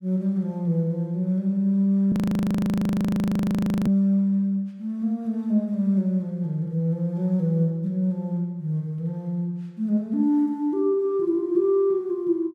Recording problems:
audio freezing; at 2 s for 2 s

